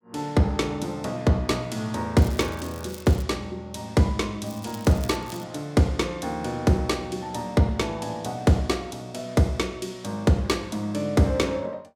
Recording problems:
crackle; from 2 to 3 s and at 4.5 s; loose cable, SNR 20 dB

